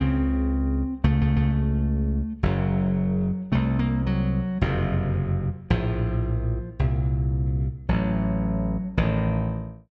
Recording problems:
audio stuttering; at 1 s

